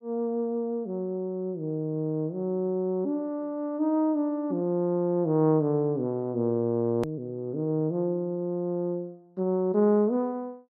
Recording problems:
click at an edit; at 7 s

